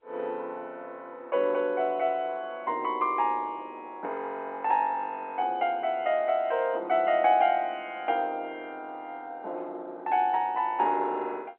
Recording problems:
telephone audio; 260 Hz to 3.2 kHz, G.711

